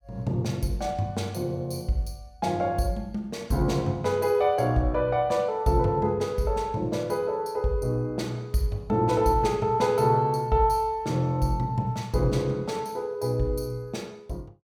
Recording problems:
none

